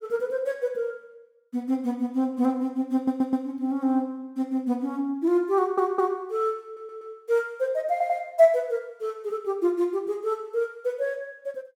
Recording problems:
stutter; 4 times, first at 3 s

